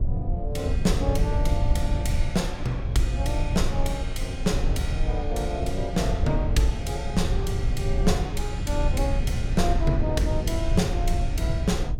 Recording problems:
rumble; below 90 Hz, SNR -1 dB

